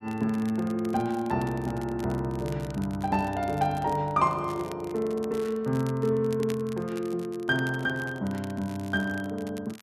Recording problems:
crackling; vinyl, SNR 21 dB

